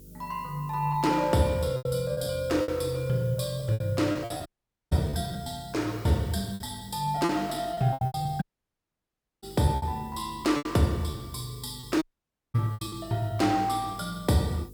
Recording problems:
hum; 50 Hz, harmonics up to 500 Hz, SNR 22 dB
background hiss; SNR 25 dB
lost packets; 11% of the sound replaced, filled with repeated pitch periods
dropout; at 4.5 s, at 8.5 s for 1 s and at 12 s for 0.5 s

